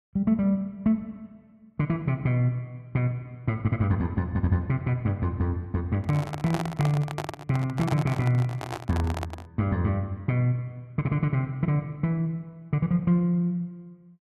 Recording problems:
handling noise; from 6 to 9.5 s; peak 0 dB vs average level

